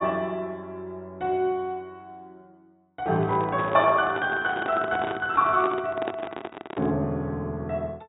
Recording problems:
low-pass filter; nothing above 4 kHz
microphone handling noise; from 3 to 7 s; peak 0 dB vs average level

